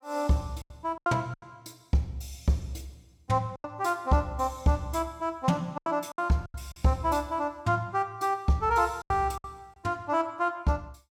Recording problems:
lost packets; 7% of the sound replaced, filled with silence

